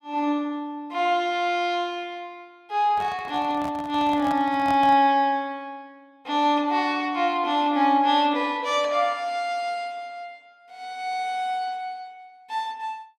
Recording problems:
microphone handling noise; from 3 to 5 s; peak -7 dB vs average level

